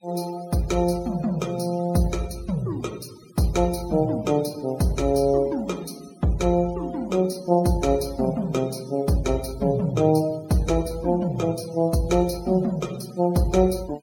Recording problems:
denoising artefacts; signal-to-artefact ratio 22 dB

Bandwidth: 17 kHz